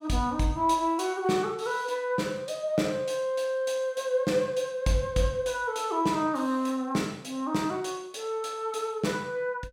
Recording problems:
none

